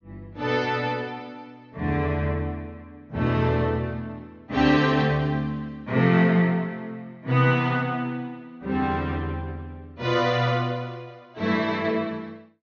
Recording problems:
low-pass filter; nothing above 6.7 kHz

